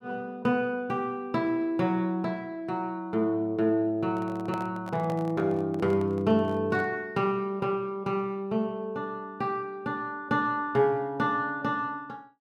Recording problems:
handling noise; from 4 to 7 s; peak -7 dB vs average level

